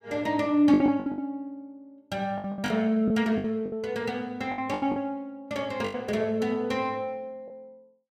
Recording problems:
packet loss; 10% of the sound replaced, filled with the last packet

